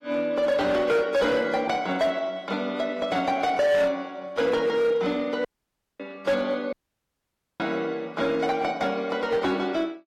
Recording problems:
codec artefacts; AAC, log-spectral distance 2 dB, nothing above 14.3 kHz
distortion; hard clipping, signal-to-distortion ratio 12 dB
dropout; at 5.5 s for 0.5 s and at 6.5 s for 1 s

